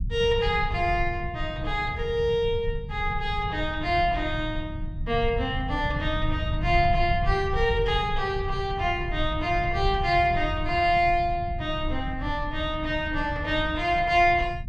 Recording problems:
rumble; below 110 Hz, SNR 7 dB

